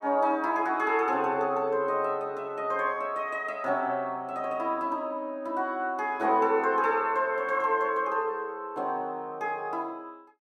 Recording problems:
none

